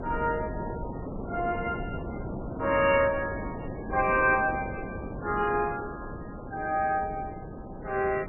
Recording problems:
lossy compression; MP3, log-spectral distance 3 dB, nothing above 2.4 kHz
wind noise; below 480 Hz, SNR 9 dB

